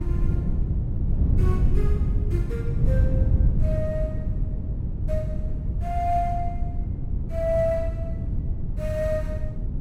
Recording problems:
wind noise; below 120 Hz, SNR -4 dB

